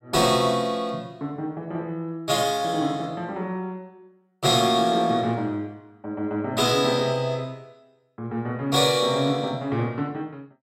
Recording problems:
none

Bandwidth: 16.5 kHz